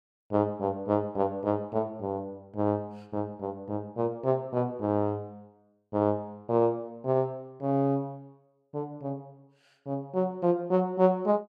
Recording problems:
none

